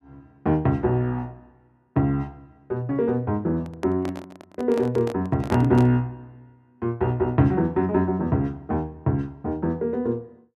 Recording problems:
microphone handling noise; from 3.5 to 6 s; peak -2 dB vs average level

